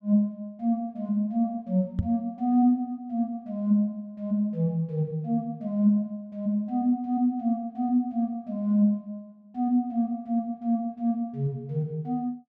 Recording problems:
microphone thump; at 2 s; peak +4 dB vs average level

